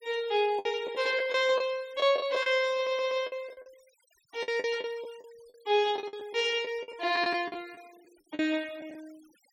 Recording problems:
noise reduction artefacts; signal-to-artefact ratio 25 dB
packet loss; 12% of the sound replaced, filled with the last packet
audio stuttering; at 3 s

